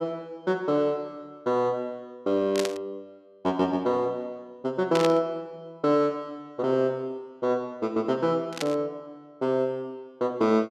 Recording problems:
burst of static; at 2.5 s, at 5 s and at 8.5 s; peak 0 dB vs average level

